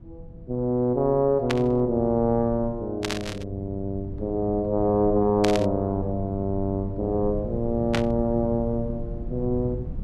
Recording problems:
rumble; below 140 Hz, SNR 13 dB
static burst; 4 times, first at 1.5 s; peak +1 dB vs average level

